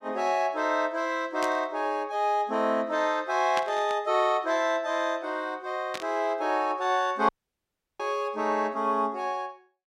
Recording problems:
burst of static; at 1.5 s, at 3.5 s and at 6 s; peak -3 dB vs average level
audio cutting out; at 7.5 s for 0.5 s

